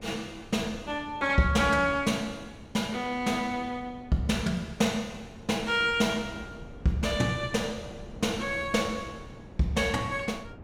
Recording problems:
wind noise; below 360 Hz, SNR 18 dB

